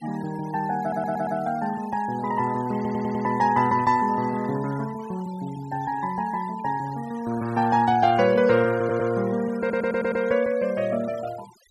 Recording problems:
denoising artefacts; signal-to-artefact ratio 19 dB
stutter; 4 times, first at 1 s

